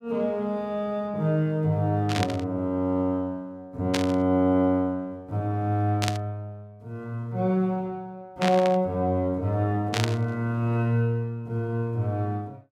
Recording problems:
static burst; 5 times, first at 2 s; peak +2 dB vs average level

